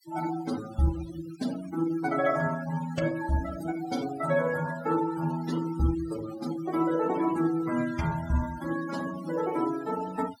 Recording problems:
noise reduction artefacts; signal-to-artefact ratio 13 dB

